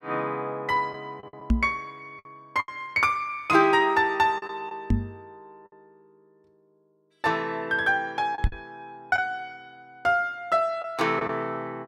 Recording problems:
lost packets; 5% of the sound replaced, filled with the last packet
microphone thump; at 1.5 s, at 5 s and at 8.5 s; peak +6 dB vs average level

